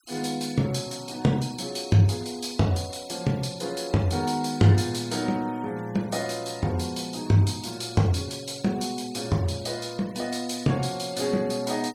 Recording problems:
denoising artefacts; signal-to-artefact ratio 22 dB

